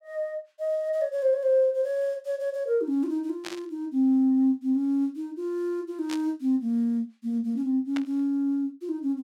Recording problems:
burst of static; at 3.5 s, at 6 s and at 8 s; peak -6 dB vs average level

